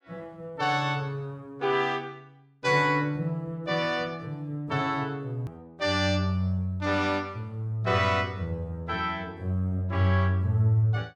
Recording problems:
edit click; at 5.5 s

